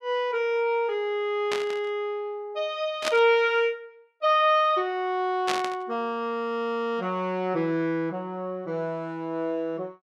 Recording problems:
burst of static; at 1.5 s, at 3 s and at 5.5 s; peak +2 dB vs average level

